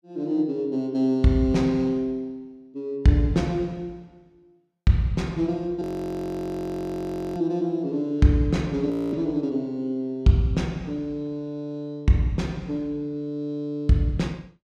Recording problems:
audio freezing; at 6 s for 1.5 s and at 9 s

